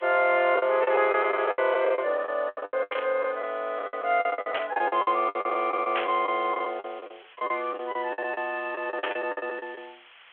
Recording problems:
telephone audio; 370 Hz to 3.5 kHz, G.726
background hiss; SNR 26 dB
lost packets; 19% of the sound replaced, filled with the last packet
static burst; 4 times, first at 3 s; peak 0 dB vs average level

